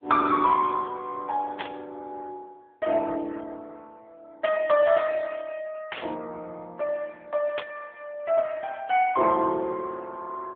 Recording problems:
telephone audio; 240 Hz to 3 kHz, AMR-NB
static burst; 4 times, first at 1.5 s; peak -3 dB vs average level

